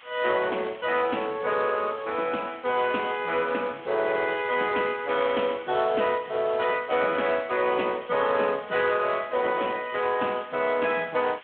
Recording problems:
phone line; 260 Hz to 3.4 kHz, Speex
background hiss; SNR 21 dB

